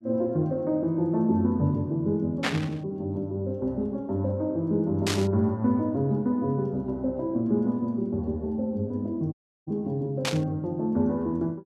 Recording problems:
burst of static; at 2.5 s, at 5 s and at 10 s; peak +4 dB vs average level
dropout; at 9.5 s

